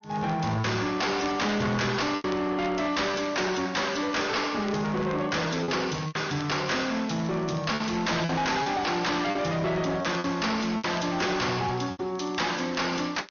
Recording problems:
treble cut off; nothing above 6.5 kHz
lossy compression; MP3, log-spectral distance 6 dB
distortion; hard clipping, signal-to-distortion ratio 5 dB
crackle; vinyl, SNR 24 dB
packet loss; 5% of the sound replaced, filled with repeated pitch periods

